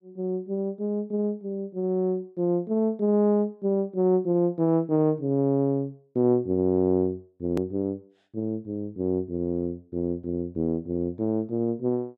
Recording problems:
hard cut with a click; at 7.5 s

